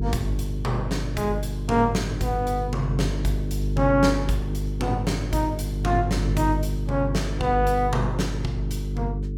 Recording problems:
hum; 50 Hz, harmonics up to 450 Hz, SNR 3 dB

